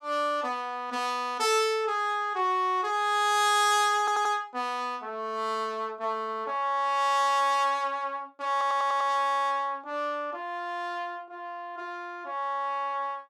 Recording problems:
stutter; at 4 s and at 8.5 s

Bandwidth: 15.5 kHz